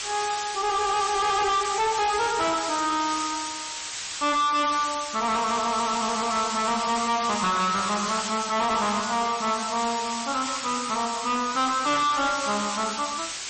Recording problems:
lossy compression; MP3, log-spectral distance 18 dB, nothing above 8.2 kHz
distorted audio; soft clipping, signal-to-distortion ratio 6 dB
background hiss; slope +1 dB per octave, SNR 6 dB

